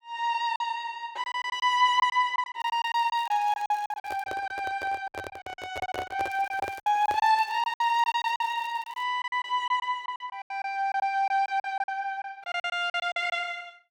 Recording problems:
packet loss; 14% of the sound replaced, filled with silence
crackling; from 2.5 to 4 s and from 6.5 to 9 s; loose cable, SNR 25 dB
microphone handling noise; from 4 to 7.5 s; peak -3 dB vs average level

